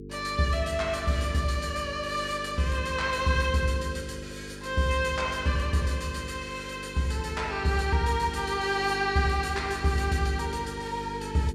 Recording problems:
hum; 50 Hz, harmonics up to 450 Hz, SNR 13 dB

